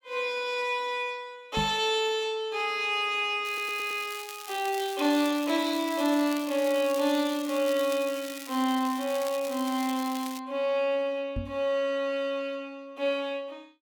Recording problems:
microphone bump; at 1.5 s and at 11 s; peak -1 dB vs average level
crackle; from 3.5 to 10 s; loose cable, SNR 13 dB
stutter; at 3.5 s

